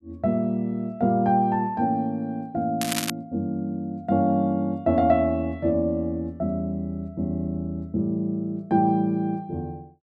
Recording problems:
crackle; at 3 s; loose cable, SNR 5 dB

